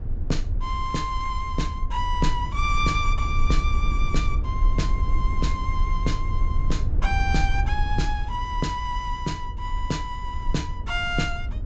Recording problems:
treble missing; nothing above 8 kHz
rumble; below 66 Hz, SNR -1 dB

